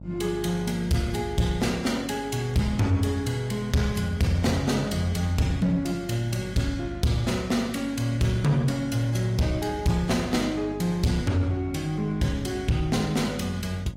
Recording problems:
codec artefacts; AAC, log-spectral distance 3 dB, nothing above 15.5 kHz
distortion; soft clipping, signal-to-distortion ratio 11 dB
electrical hum; 50 Hz, harmonics up to 650 Hz, SNR 15 dB

